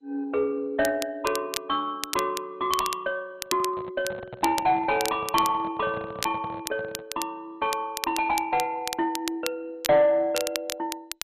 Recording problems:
codec artefacts; MP2, log-spectral distance 2 dB
distorted audio; soft clipping, signal-to-distortion ratio 11 dB
crackling; vinyl, SNR 8 dB
handling noise; from 3.5 to 7 s; peak -8 dB vs average level

